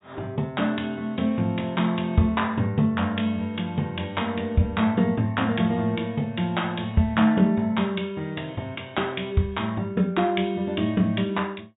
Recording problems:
treble cut off; nothing above 4 kHz

